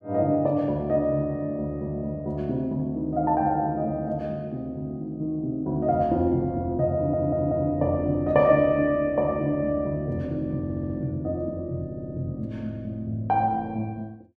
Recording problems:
stutter; at 7 s, at 11 s and at 12 s

